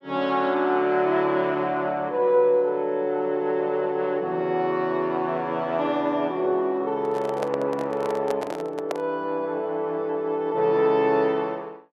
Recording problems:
microphone handling noise; from 7 to 9 s; peak -2 dB vs average level

